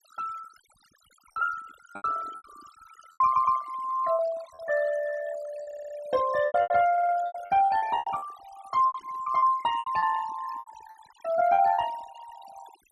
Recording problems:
denoising artefacts; signal-to-artefact ratio 17 dB
lost packets; 12% of the sound replaced, filled with repeated pitch periods
audio stuttering; at 3.5 s, at 5.5 s and at 7 s

